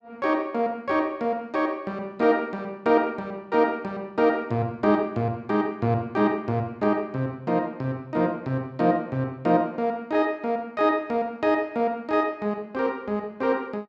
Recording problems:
none

